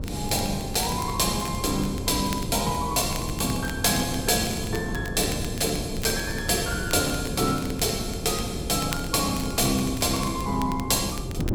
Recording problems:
wind on the microphone; below 270 Hz, SNR 8 dB
crackling; vinyl, SNR 16 dB

